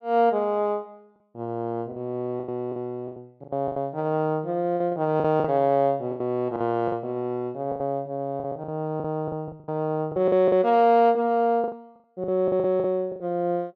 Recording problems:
lost packets; 12% of the sound replaced, filled with the last packet

